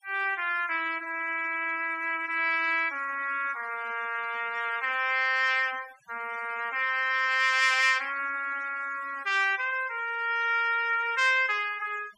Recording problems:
noise reduction artefacts; signal-to-artefact ratio 21 dB

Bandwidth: 15 kHz